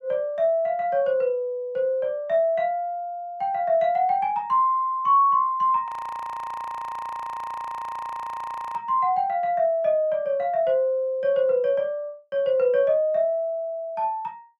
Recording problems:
audio freezing; at 6 s for 3 s

